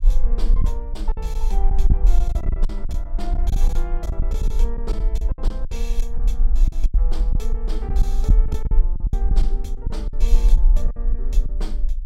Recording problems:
low-frequency rumble; below 42 Hz, strongest tone 20 Hz, SNR -12 dB
lost packets; 12% of the sound replaced, filled with silence

